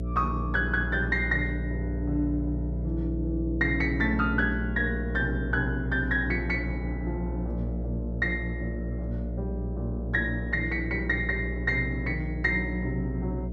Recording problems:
mains hum; 60 Hz, harmonics up to 660 Hz, SNR 3 dB

